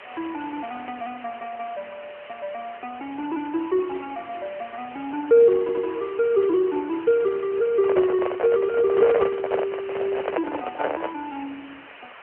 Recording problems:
phone line; 340 Hz to 2.9 kHz, AMR-NB
hiss; SNR 18 dB
stutter; at 5.5 s
microphone handling noise; from 8 to 11 s; peak +4 dB vs average level

